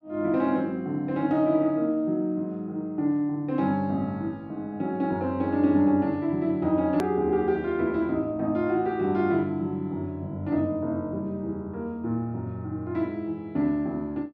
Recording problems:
hard cut with a click; at 7 s

